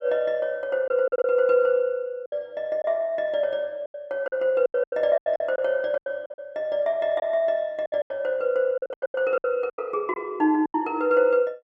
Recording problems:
lost packets; 12% of the sound replaced, filled with silence

